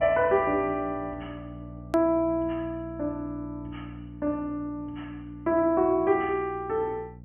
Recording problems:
treble missing; nothing above 3.1 kHz
hum; 60 Hz, harmonics up to 540 Hz, SNR 17 dB
click at an edit; at 2 s

